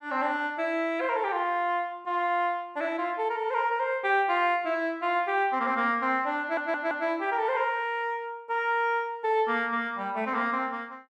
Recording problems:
audio stuttering; at 6.5 s

